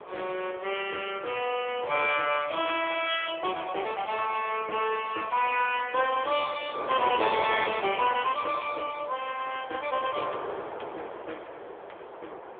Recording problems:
phone line; 340 Hz to 3.4 kHz, AMR-NB
wind on the microphone; below 1 kHz, SNR 10 dB

